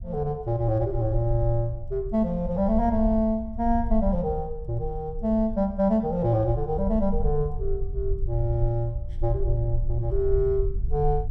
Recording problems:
low-frequency rumble; below 58 Hz, strongest tone 20 Hz, SNR 7 dB

